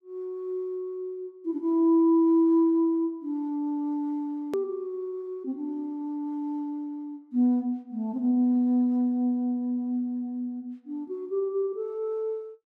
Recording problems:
click at an edit; at 4.5 s

